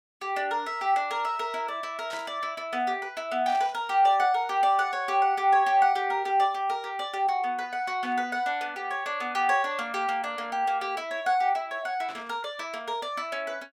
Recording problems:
static burst; 4 times, first at 2 s; peak -11 dB vs average level

